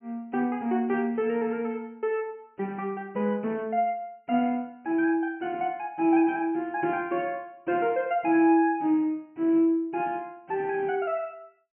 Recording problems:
treble cut off; nothing above 3 kHz

